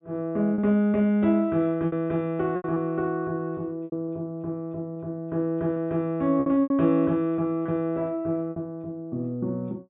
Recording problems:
low-pass filter; nothing above 4 kHz
lost packets; 6% of the sound replaced, filled with repeated pitch periods

